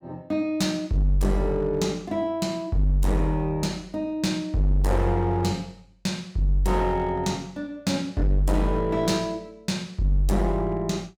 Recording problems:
distortion; hard clipping, uneven, signal-to-distortion ratio 10 dB

